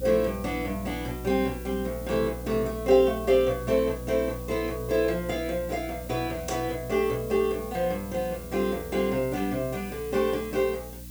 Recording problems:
electrical hum; 60 Hz, harmonics up to 300 Hz, SNR 13 dB
hiss; slope +2 dB per octave, SNR 18 dB

